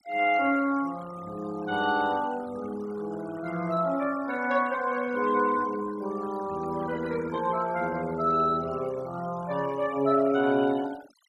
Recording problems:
noise reduction artefacts; signal-to-artefact ratio 18 dB

